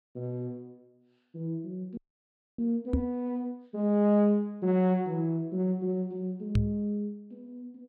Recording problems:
audio freezing; at 2 s for 0.5 s
knock on the microphone; at 3 s and at 6.5 s; peak +6 dB vs average level

